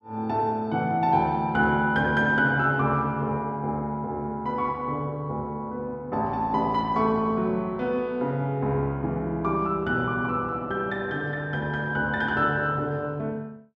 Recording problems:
none

